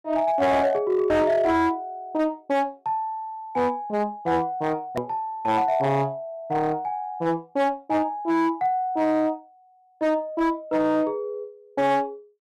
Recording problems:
distorted audio; hard clipping, signal-to-distortion ratio 11 dB
edit click; at 5 s

